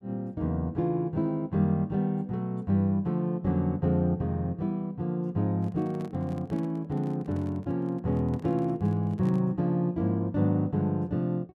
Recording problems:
handling noise; from 5.5 to 9.5 s; peak -12 dB vs average level

